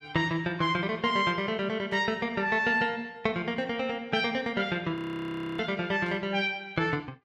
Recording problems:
static burst; at 2 s and at 6 s; peak -15 dB vs average level
audio freezing; at 5 s for 0.5 s

